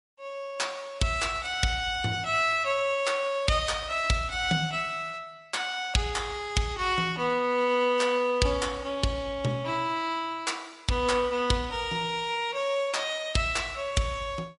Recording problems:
lossy codec; MP3, log-spectral distance 2 dB, nothing above 11 kHz

